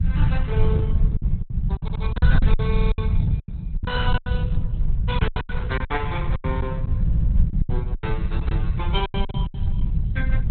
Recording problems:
lossy codec; Opus, log-spectral distance 2 dB, nothing above 3.8 kHz
rumble; below 110 Hz, SNR -8 dB
packet loss; 15% of the sound replaced, filled with silence
stutter; at 2 s, at 2.5 s and at 7 s

